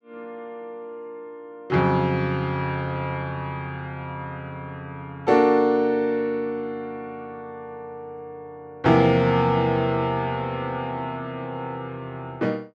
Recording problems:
none

